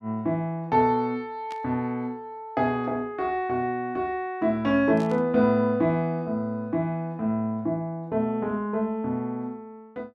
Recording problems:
static burst; at 1.5 s and at 5 s; peak -13 dB vs average level

